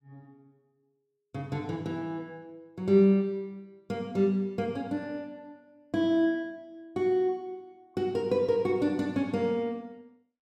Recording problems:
none

